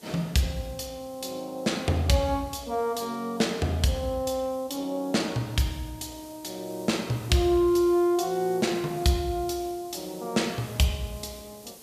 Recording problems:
background hiss; SNR 22 dB

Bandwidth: 14.5 kHz